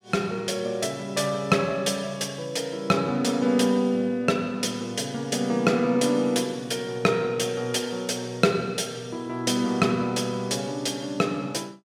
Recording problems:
none

